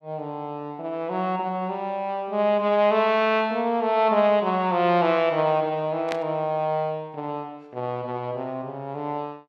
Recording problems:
burst of static; at 6 s; peak -3 dB vs average level

